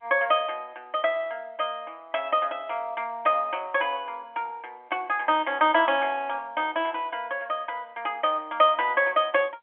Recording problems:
telephone audio; 240 Hz to 3.3 kHz, G.711

